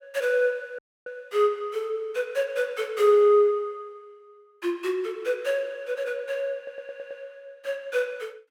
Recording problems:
dropout; at 1 s
audio stuttering; at 6.5 s

